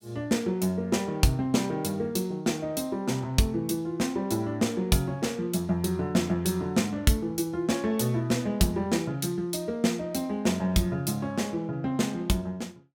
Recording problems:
none

